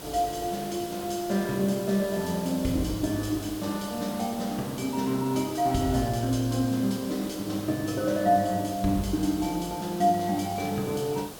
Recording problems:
background hiss; SNR 13 dB

